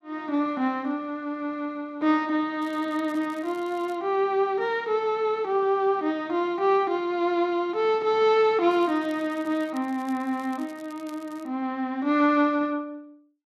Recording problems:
crackle; from 2.5 to 4 s and from 8.5 to 11 s; loose cable, SNR 28 dB

